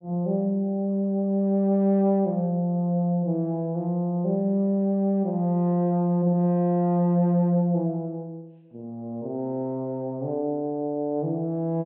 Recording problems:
treble missing; nothing above 4 kHz

